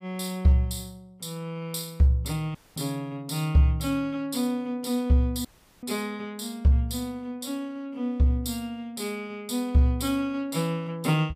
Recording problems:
dropout; at 2.5 s and at 5.5 s

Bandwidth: 15 kHz